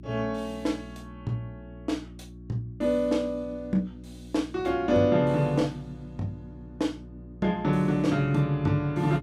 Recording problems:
hum; 60 Hz, harmonics up to 360 Hz, SNR 17 dB

